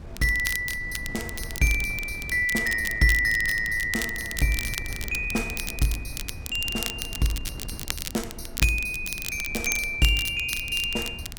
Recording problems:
wind on the microphone; below 110 Hz, SNR 14 dB
crackling; vinyl, SNR 9 dB

